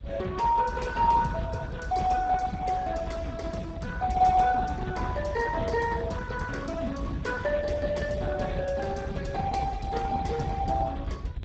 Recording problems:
lossy codec; Speex, log-spectral distance 2 dB, nothing above 7.3 kHz
rumble; below 130 Hz, SNR 9 dB

